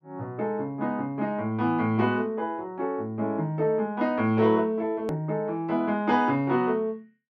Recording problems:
click at an edit; at 5 s

